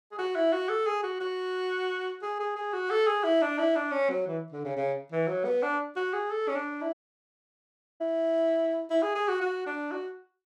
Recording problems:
audio cutting out; at 7 s for 1 s

